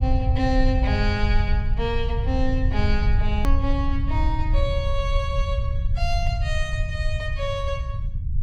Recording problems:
low-frequency rumble; below 82 Hz, SNR -3 dB
hard cut with a click; at 3.5 s

